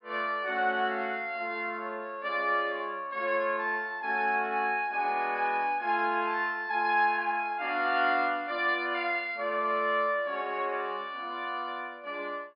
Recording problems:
low-pass filter; nothing above 5.5 kHz

